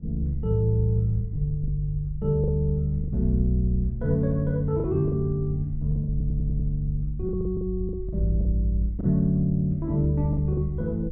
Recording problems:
wind noise; below 64 Hz, SNR 11 dB
lost packets; 6% of the sound replaced, filled with the last packet
audio stuttering; at 6 s

